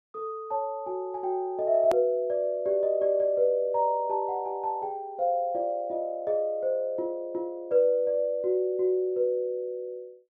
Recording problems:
edit click; at 2 s

